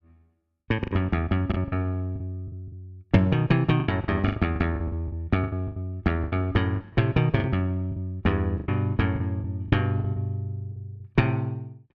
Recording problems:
lost packets; 13% of the sound replaced, filled with the last packet

